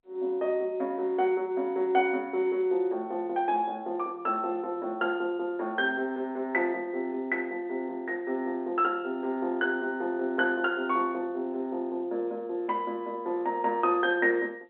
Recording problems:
telephone audio; 240 Hz to 3.8 kHz, G.711

